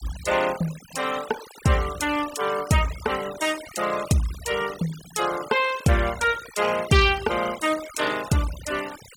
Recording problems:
noise reduction artefacts; signal-to-artefact ratio 14 dB

